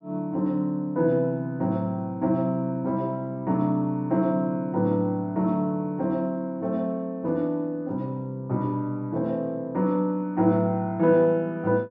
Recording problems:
none

